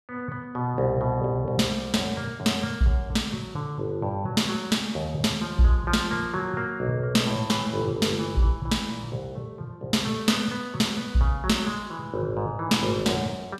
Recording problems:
none

